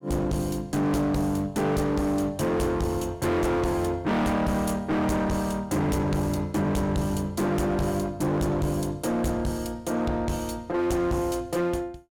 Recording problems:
distortion; hard clipping, uneven, signal-to-distortion ratio 6 dB

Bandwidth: 17 kHz